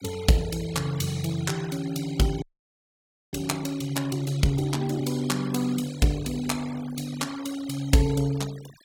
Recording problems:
noise reduction artefacts; signal-to-artefact ratio 17 dB
frozen audio; at 2.5 s for 1 s

